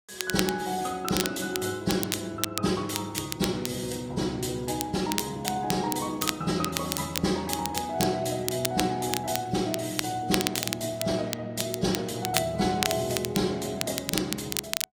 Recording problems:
codec artefacts; AAC, log-spectral distance 4 dB
crackle; vinyl, SNR 4 dB

